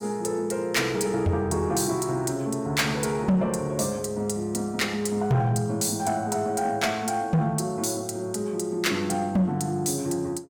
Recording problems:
distortion; soft clipping, signal-to-distortion ratio 12 dB

